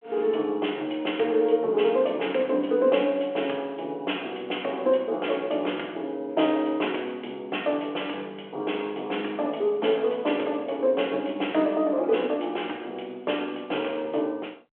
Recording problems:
phone line; 280 Hz to 3.3 kHz, G.726

